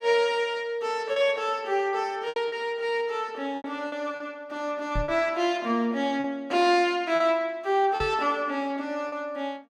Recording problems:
packet loss; 5% of the sound replaced, filled with repeated pitch periods
microphone bump; at 5 s and at 8 s; peak -1 dB vs average level

